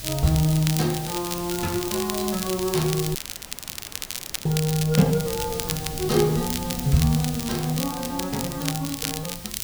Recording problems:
background hiss; slope +4 dB per octave, SNR 11 dB
wind noise; below 210 Hz, SNR 16 dB
crackling; vinyl, SNR 7 dB
dropout; at 3 s for 1.5 s

